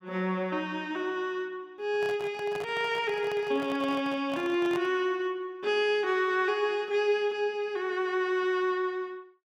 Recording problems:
handling noise; from 2 to 5 s; peak -6 dB vs average level

